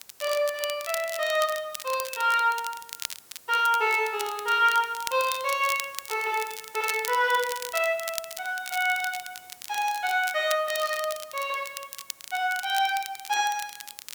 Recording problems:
hiss; slope -1 dB per octave, SNR 24 dB
crackling; vinyl, SNR 11 dB

